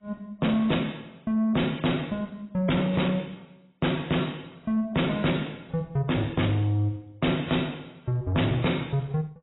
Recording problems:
codec artefacts; AAC, log-spectral distance 5 dB, nothing above 3.8 kHz
distorted audio; soft clipping, signal-to-distortion ratio 6 dB

